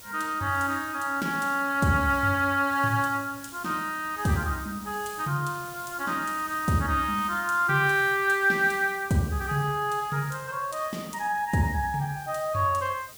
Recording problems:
background hiss; SNR 17 dB

